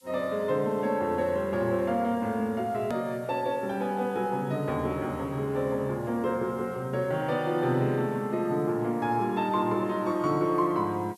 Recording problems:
hiss; SNR 29 dB
hard cut with a click; at 3 s

